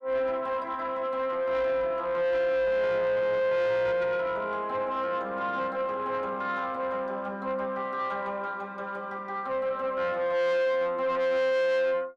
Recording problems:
distorted audio; soft clipping, signal-to-distortion ratio 7 dB

